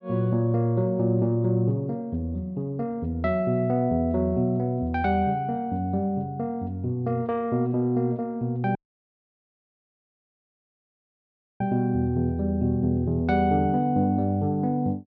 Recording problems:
dropout; at 9 s for 3 s

